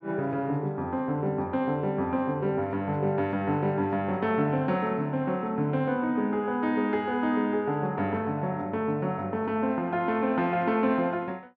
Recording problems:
none

